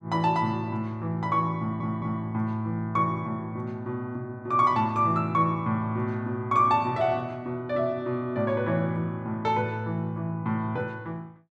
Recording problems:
stutter; at 1.5 s

